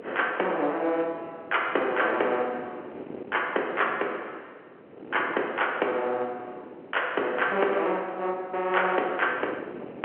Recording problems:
phone line; 300 Hz to 3.2 kHz, G.711
wind noise; below 560 Hz, SNR 16 dB

